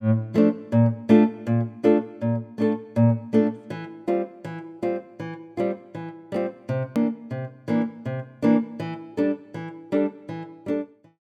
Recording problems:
edit click; at 7 s

